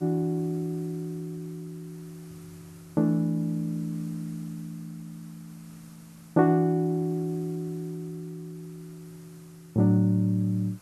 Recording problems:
hiss; slope -3 dB per octave, SNR 27 dB

